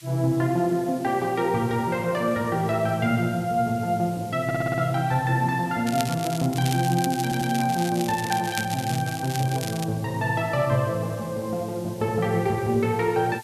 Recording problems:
hiss; slope +5 dB per octave, SNR 21 dB
audio stuttering; at 4.5 s and at 7 s
crackling; from 6 to 10 s; loose cable, SNR 11 dB

